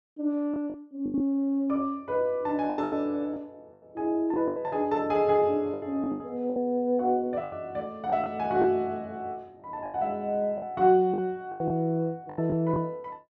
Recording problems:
lost packets; 10% of the sound replaced, filled with the last packet

